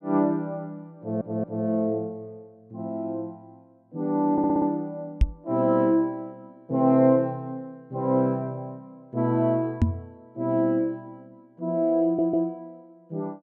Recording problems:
audio stuttering; at 1 s, at 4.5 s and at 12 s
knock on the microphone; at 5 s and at 10 s; peak +8 dB vs average level

